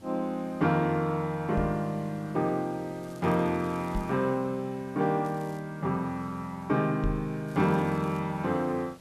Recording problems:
background hiss; slope -4 dB per octave, SNR 24 dB
microphone bump; at 1.5 s, at 4 s and at 7 s; peak 0 dB vs average level
crackle; from 3 to 4 s, at 5 s and at 7.5 s; loose cable, SNR 28 dB

